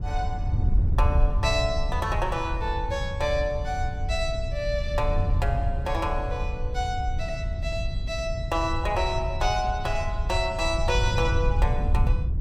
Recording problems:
wind on the microphone; below 88 Hz, SNR 0 dB

